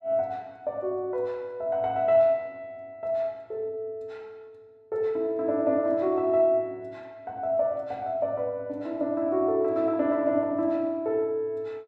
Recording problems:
none

